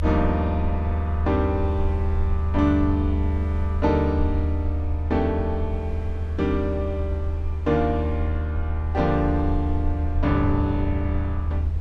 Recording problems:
rumble; below 80 Hz, strongest tone 78 Hz, SNR 0 dB
wind on the microphone; below 920 Hz, SNR 23 dB

